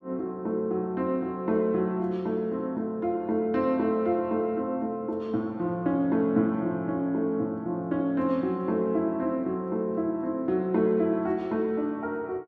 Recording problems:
none

